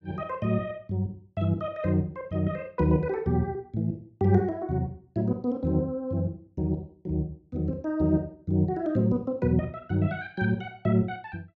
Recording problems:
none

